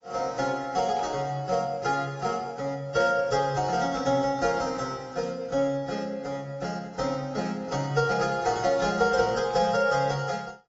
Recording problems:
codec artefacts; AAC, log-spectral distance 3 dB, nothing above 7.3 kHz
burst of static; at 1 s, at 4 s and at 9.5 s; peak -15 dB vs average level

